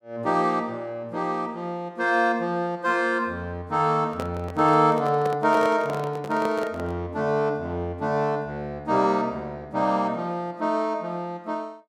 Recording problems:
handling noise; from 4 to 7 s; peak -4 dB vs average level

